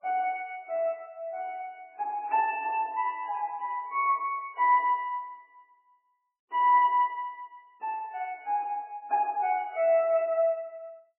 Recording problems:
lossy codec; MP3, log-spectral distance 2 dB, nothing above 2.7 kHz

